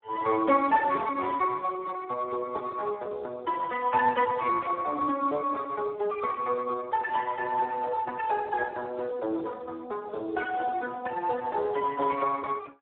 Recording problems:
phone line; 280 Hz to 2.2 kHz, Speex

